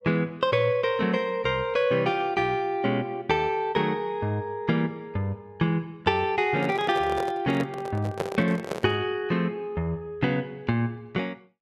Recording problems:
handling noise; from 6.5 to 9 s; peak +2 dB vs average level

